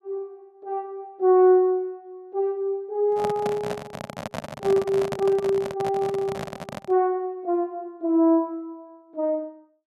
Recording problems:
handling noise; from 3 to 7 s; peak -2 dB vs average level

